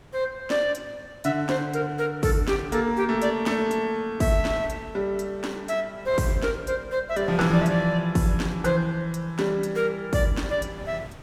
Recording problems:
wind noise; below 850 Hz, SNR 21 dB

